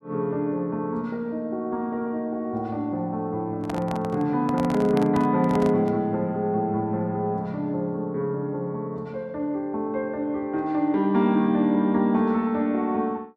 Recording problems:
microphone handling noise; from 3.5 to 6 s; peak -4 dB vs average level

